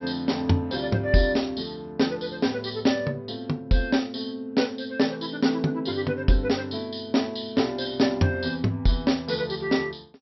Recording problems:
treble cut off; nothing above 5.7 kHz

